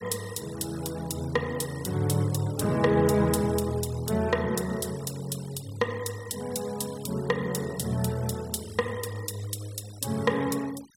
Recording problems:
denoising artefacts; signal-to-artefact ratio 19 dB

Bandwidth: 16 kHz